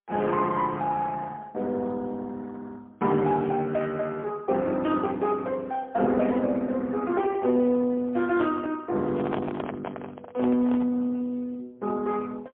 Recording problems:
phone line; 170 Hz to 3.6 kHz, AMR-NB, then MP3
microphone handling noise; from 9 to 11 s; peak 0 dB vs average level

